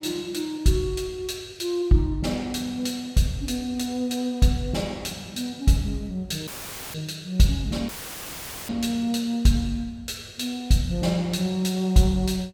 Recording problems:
audio cutting out; at 6.5 s and at 8 s for 1 s; filled with static

